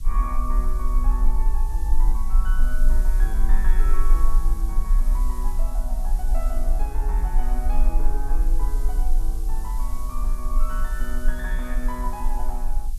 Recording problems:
background hiss; slope +3 dB per octave, SNR 11 dB
low-frequency rumble; below 36 Hz, strongest tone 18 Hz, SNR -11 dB

